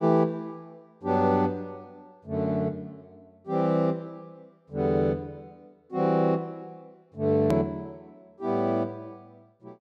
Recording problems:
hard cut with a click; at 7.5 s

